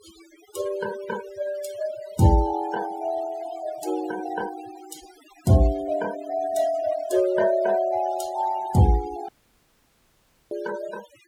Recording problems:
noise reduction artefacts; signal-to-artefact ratio 17 dB
dropout; at 9.5 s for 1 s

